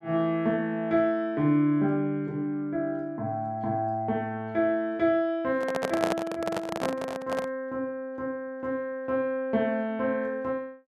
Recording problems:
microphone handling noise; from 5.5 to 7.5 s; peak +3 dB vs average level

